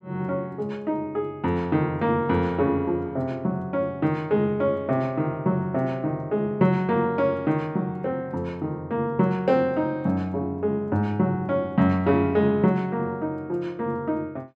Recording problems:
none

